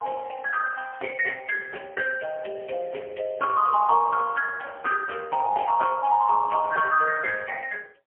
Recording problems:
phone line; 300 Hz to 2.8 kHz, AMR-NB, then MP3

